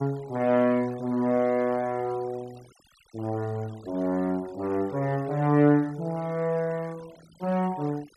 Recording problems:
denoising artefacts; signal-to-artefact ratio 24 dB

